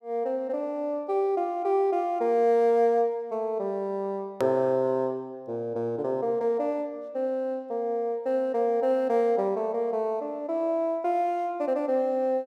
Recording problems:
hard cut with a click; at 4.5 s

